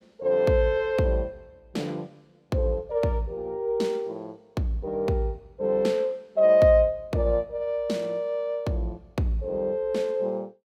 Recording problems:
none

